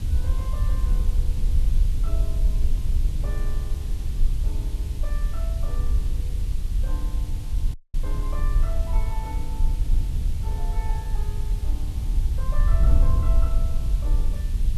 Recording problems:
hiss; slope +1 dB per octave, SNR 5 dB
wind on the microphone; below 58 Hz, SNR -16 dB
audio cutting out; at 7.5 s

